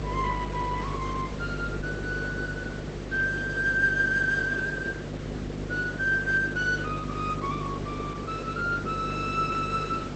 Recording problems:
lossy codec; Opus, log-spectral distance 3 dB
electrical hum; 50 Hz, harmonics up to 450 Hz, SNR 8 dB
hiss; SNR 10 dB

